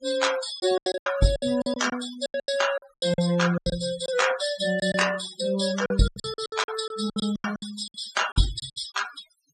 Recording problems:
noise reduction artefacts; signal-to-artefact ratio 10 dB
packet loss; 16% of the sound replaced, filled with silence

